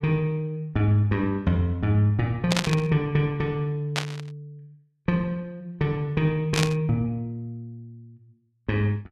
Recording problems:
burst of static; at 2.5 s, at 4 s and at 6.5 s; peak +4 dB vs average level

